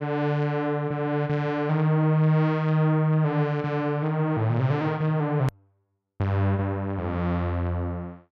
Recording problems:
hard cut with a click; at 5.5 s

